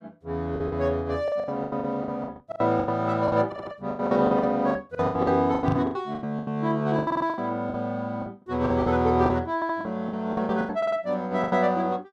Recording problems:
packet loss; 19% of the sound replaced, filled with the last packet
stutter; 4 times, first at 3.5 s
microphone thump; at 5.5 s; peak +3 dB vs average level

